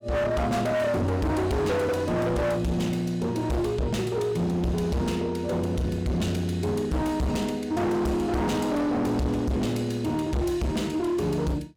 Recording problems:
distorted audio; hard clipping, signal-to-distortion ratio 7 dB

